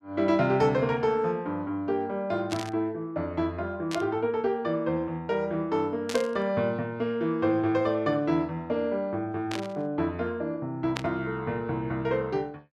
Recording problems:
static burst; 5 times, first at 2.5 s; peak 0 dB vs average level

